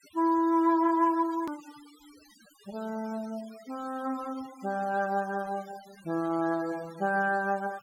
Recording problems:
denoising artefacts; signal-to-artefact ratio 23 dB
hard cut with a click; at 1.5 s

